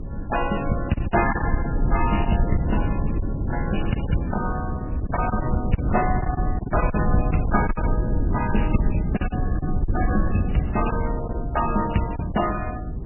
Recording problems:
lossy compression; AAC, then MP3, log-spectral distance 4 dB, nothing above 2.9 kHz
electrical hum; 60 Hz, harmonics up to 300 Hz, SNR 20 dB
low-frequency rumble; below 150 Hz, SNR 0 dB
packet loss; 7% of the sound replaced, filled with silence

